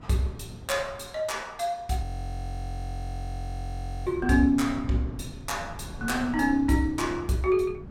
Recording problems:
wind on the microphone; below 200 Hz, SNR 13 dB
audio freezing; at 2 s for 2 s

